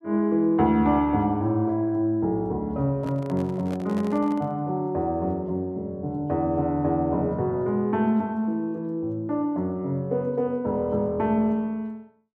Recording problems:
handling noise; from 3 to 4.5 s; peak -10 dB vs average level

